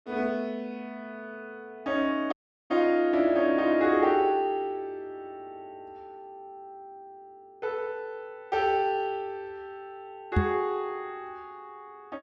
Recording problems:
audio cutting out; at 2.5 s
microphone thump; at 10 s; peak +7 dB vs average level

